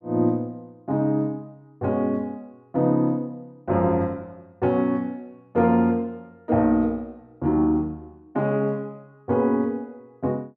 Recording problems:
none

